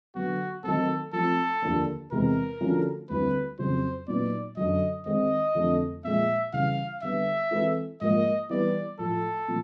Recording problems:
none

